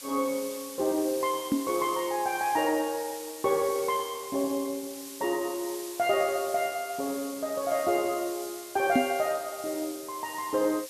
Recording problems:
hiss; slope +2 dB per octave, SNR 11 dB
microphone bump; at 1.5 s and at 9 s; peak +8 dB vs average level

